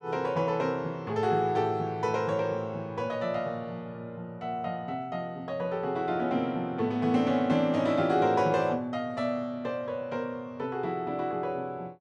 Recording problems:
none

